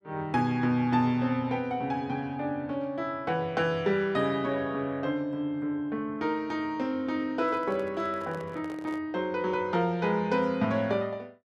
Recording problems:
microphone handling noise; from 7.5 to 9 s; peak -11 dB vs average level

